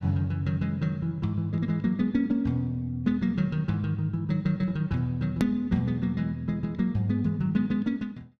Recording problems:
click at an edit; at 5.5 s

